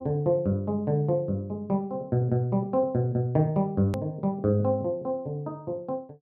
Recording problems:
click at an edit; at 4 s

